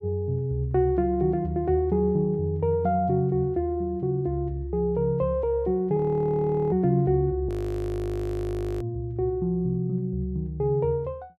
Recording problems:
frozen audio; at 6 s for 1 s and at 7.5 s for 1.5 s

